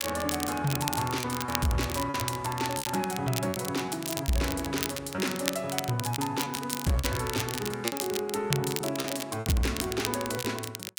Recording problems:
distortion; soft clipping, signal-to-distortion ratio 11 dB
crackle; vinyl, SNR 5 dB
packet loss; 9% of the sound replaced, filled with repeated pitch periods

